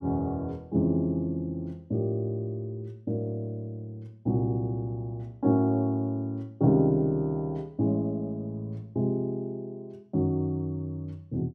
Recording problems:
none

